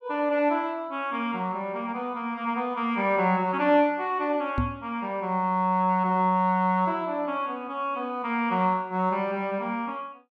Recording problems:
microphone bump; at 4.5 s; peak +3 dB vs average level

